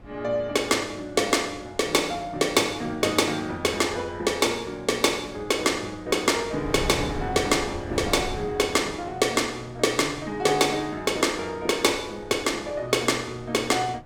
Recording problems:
wind noise; below 440 Hz, SNR 17 dB

